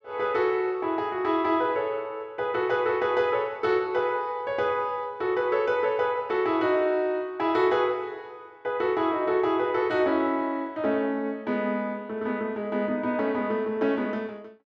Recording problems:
none

